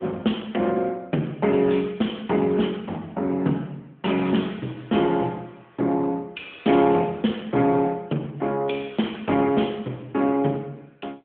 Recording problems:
phone line; 150 Hz to 3.4 kHz, AMR-NB

